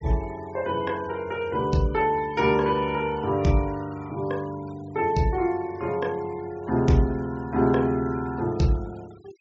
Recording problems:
treble missing; nothing above 8 kHz
noise reduction artefacts; signal-to-artefact ratio 24 dB

